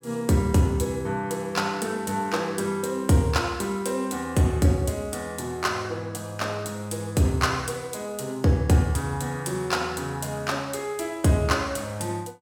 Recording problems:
none

